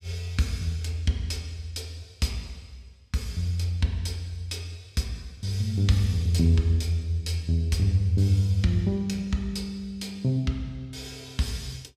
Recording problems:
none

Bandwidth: 15.5 kHz